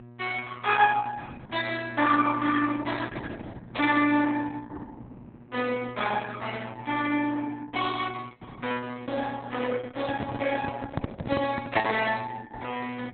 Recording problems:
codec artefacts; Opus, log-spectral distance 5 dB, nothing above 3.9 kHz
electrical hum; 60 Hz, harmonics up to 1.3 kHz, SNR 20 dB
microphone handling noise; from 10 to 12 s; peak +9 dB vs average level

